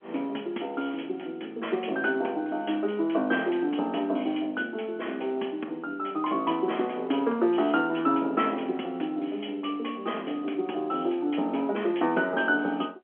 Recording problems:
telephone audio; 220 Hz to 3.3 kHz, G.711

